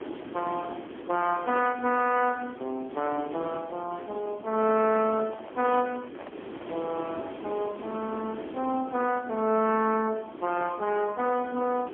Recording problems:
phone line; 240 Hz to 3.2 kHz, AMR-NB, then MP3
hiss; SNR 13 dB
microphone handling noise; from 4.5 to 7 s; peak -10 dB vs average level

